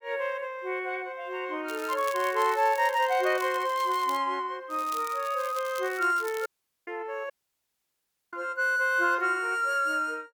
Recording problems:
crackling; from 1.5 to 4 s and from 4.5 to 6.5 s; loose cable, SNR 17 dB
audio cutting out; at 6.5 s and at 7.5 s for 1 s

